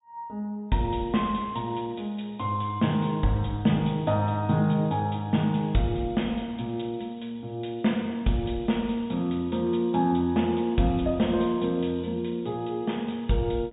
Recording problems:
low-pass filter; nothing above 4 kHz

